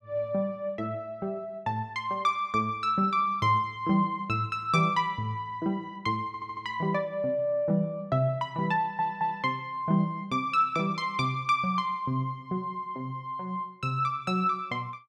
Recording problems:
stutter; at 6.5 s and at 9 s

